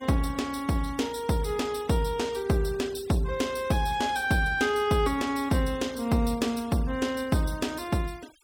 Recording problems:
noise reduction artefacts; signal-to-artefact ratio 21 dB

